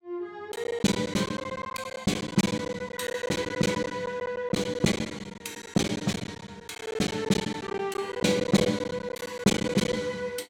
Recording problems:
packet loss; 16% of the sound replaced, filled with silence

